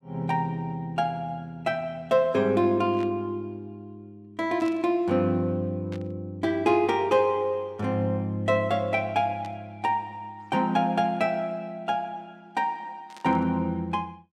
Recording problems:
static burst; 5 times, first at 3 s; peak -14 dB vs average level

